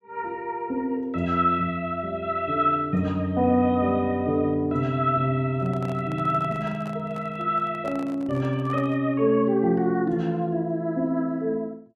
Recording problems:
handling noise; from 5.5 to 9 s; peak -11 dB vs average level

